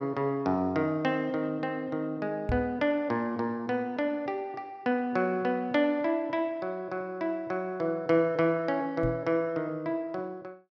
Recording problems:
knock on the microphone; at 2.5 s and at 9 s; peak +1 dB vs average level

